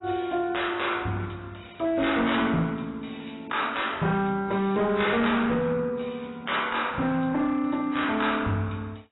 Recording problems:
lossy compression; AAC, log-spectral distance 6 dB, nothing above 3.9 kHz
distortion; hard clipping, signal-to-distortion ratio 11 dB

